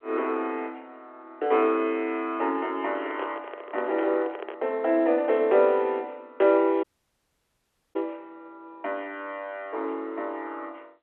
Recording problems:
telephone audio; 300 Hz to 3.7 kHz, G.711
microphone handling noise; from 3 to 4.5 s; peak -4 dB vs average level
audio cutting out; at 7 s for 1 s

